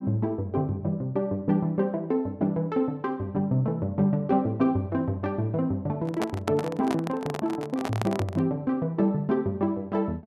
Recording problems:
handling noise; from 6 to 8.5 s; peak +1 dB vs average level

